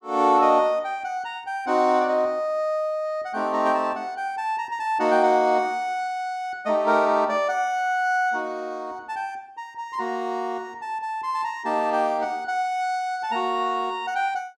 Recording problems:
none

